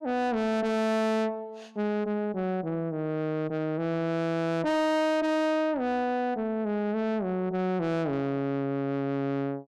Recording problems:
distortion; soft clipping, signal-to-distortion ratio 5 dB

